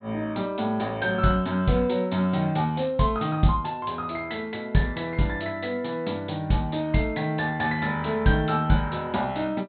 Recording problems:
treble missing; nothing above 4.2 kHz

